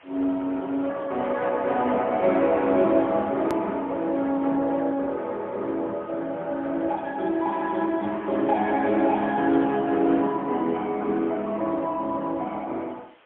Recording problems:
telephone audio; 220 Hz to 3.3 kHz, AMR-NB, then MP3
background hiss; SNR 29 dB
edit click; at 3.5 s

